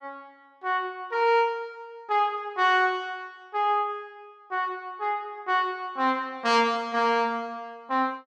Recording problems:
none

